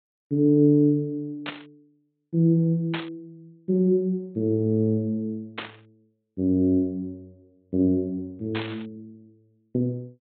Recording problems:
treble missing; nothing above 4 kHz
burst of static; 4 times, first at 1.5 s; peak -4 dB vs average level

